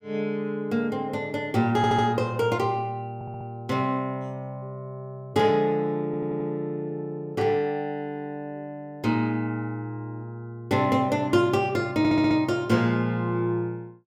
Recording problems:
audio stuttering; 4 times, first at 2 s

